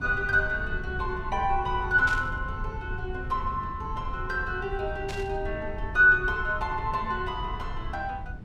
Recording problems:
rumble; below 98 Hz, SNR 10 dB
static burst; at 2 s and at 5 s; peak -6 dB vs average level

